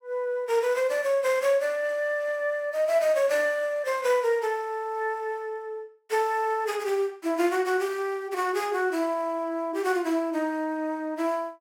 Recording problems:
none

